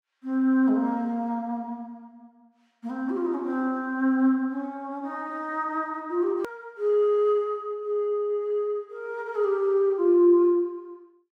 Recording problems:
edit click; at 6.5 s

